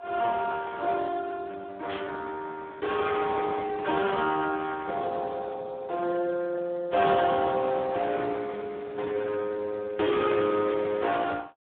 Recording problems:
telephone audio; 240 Hz to 3.8 kHz, Speex
static burst; at 2 s and at 7 s; peak -7 dB vs average level

